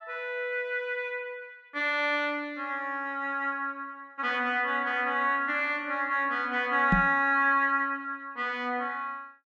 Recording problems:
knock on the microphone; at 7 s; peak +6 dB vs average level

